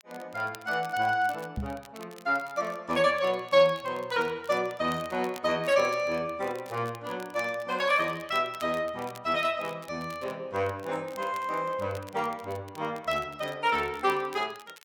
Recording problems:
crackling; vinyl, SNR 22 dB
microphone thump; at 1.5 s; peak -1 dB vs average level

